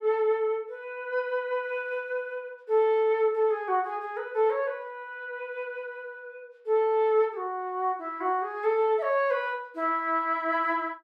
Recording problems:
none

